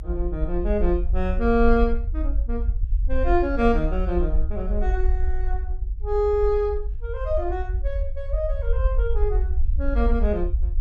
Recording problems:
low-frequency rumble; below 56 Hz, SNR 1 dB

